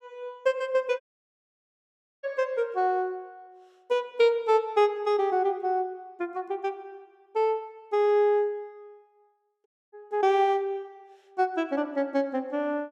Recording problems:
dropout; at 1 s for 1 s and at 9.5 s

